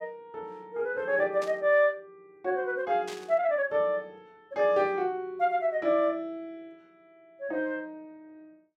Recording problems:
burst of static; at 1.5 s and at 3 s; peak -10 dB vs average level

